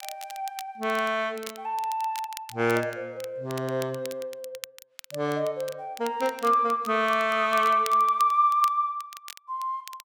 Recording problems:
crackling; vinyl, SNR 17 dB

